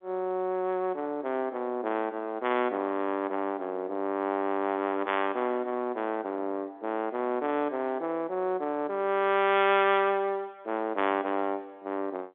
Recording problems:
phone line; 220 Hz to 3.5 kHz, G.711

